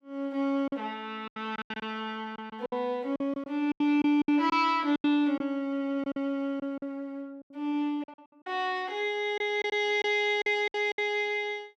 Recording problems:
lost packets; 11% of the sound replaced, filled with silence

